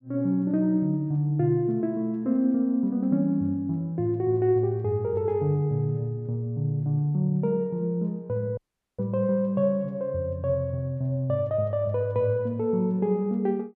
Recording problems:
audio cutting out; at 8.5 s

